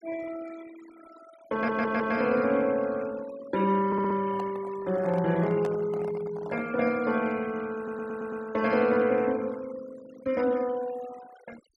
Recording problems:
noise reduction artefacts; signal-to-artefact ratio 19 dB
audio stuttering; at 1.5 s, at 4 s and at 8 s
handling noise; from 4 to 6.5 s; peak -6 dB vs average level

